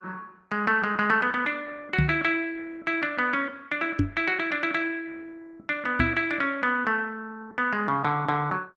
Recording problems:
lossy compression; Opus, log-spectral distance 3 dB
microphone thump; at 2 s, at 4 s and at 6 s; peak +7 dB vs average level

